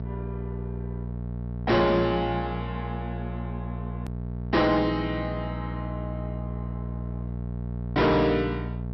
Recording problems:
low-pass filter; nothing above 5.7 kHz
distortion; hard clipping, signal-to-distortion ratio 8 dB
hum; 60 Hz, harmonics up to 900 Hz, SNR 7 dB
hard cut with a click; at 4 s

